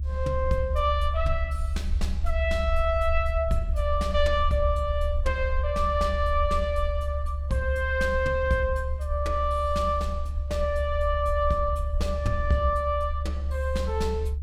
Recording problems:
rumble; below 72 Hz, strongest tone 70 Hz, SNR 2 dB

